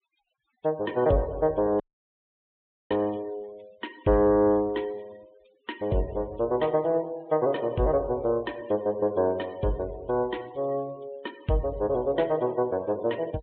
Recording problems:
low-pass filter; nothing above 4 kHz
noise reduction artefacts; signal-to-artefact ratio 26 dB
audio cutting out; at 2 s for 1 s

